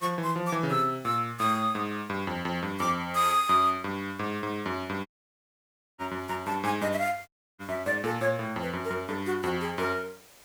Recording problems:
hiss; slope -2 dB per octave, SNR 24 dB
audio cutting out; at 5 s for 1 s and at 7.5 s

